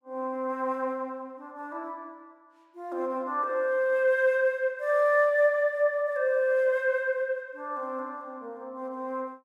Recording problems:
none

